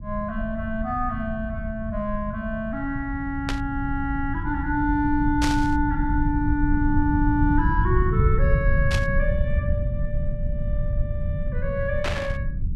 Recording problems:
low-frequency rumble; below 100 Hz, SNR 1 dB
burst of static; 4 times, first at 3.5 s; peak +2 dB vs average level

